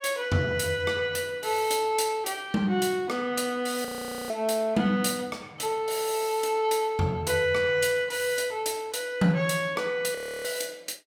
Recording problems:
audio freezing; at 4 s and at 10 s

